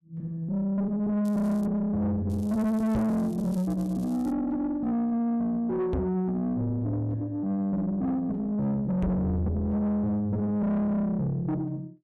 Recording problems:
distorted audio; soft clipping, signal-to-distortion ratio 7 dB
crackle; at 1 s and from 2.5 to 4.5 s; loose cable, SNR 27 dB
microphone thump; at 3 s, at 6 s and at 9 s; peak +6 dB vs average level

